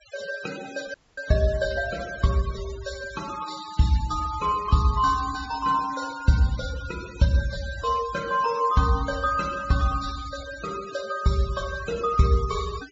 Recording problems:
treble missing; nothing above 8 kHz
denoising artefacts; signal-to-artefact ratio 16 dB
dropout; at 1 s

